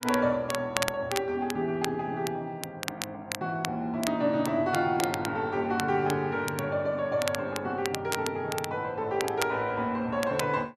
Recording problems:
crackling; vinyl, SNR 8 dB

